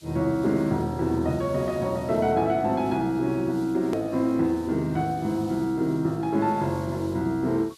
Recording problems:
background hiss; SNR 25 dB
edit click; at 4 s

